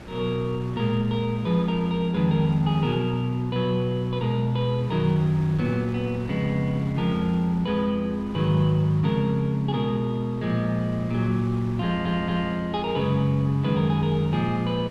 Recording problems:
wind noise; below 640 Hz, SNR 18 dB
stutter; at 12 s

